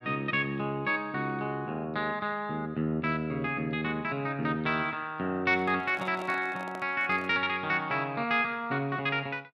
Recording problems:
microphone handling noise; from 5.5 to 7.5 s; peak -7 dB vs average level

